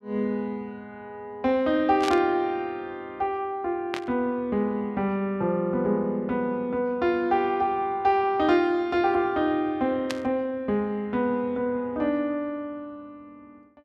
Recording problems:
burst of static; at 2 s, at 4 s and at 10 s; peak -2 dB vs average level

